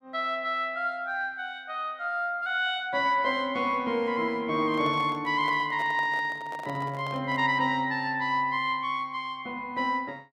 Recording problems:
microphone handling noise; from 4.5 to 7.5 s; peak -10 dB vs average level

